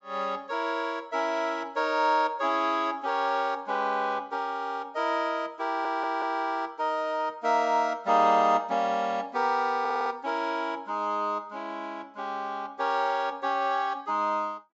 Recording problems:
treble missing; nothing above 8 kHz
stutter; at 5.5 s and at 10 s

